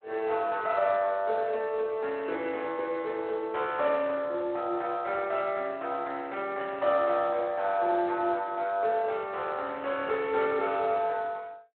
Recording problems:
phone line; 300 Hz to 3.6 kHz, Speex

